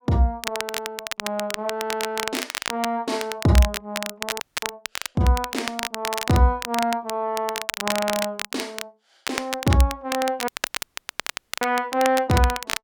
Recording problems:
crackling; vinyl, SNR 6 dB
dropout; at 4.5 s and at 10 s for 1 s

